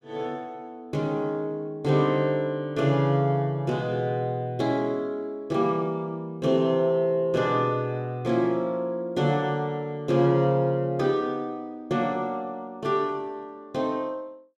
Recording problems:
none

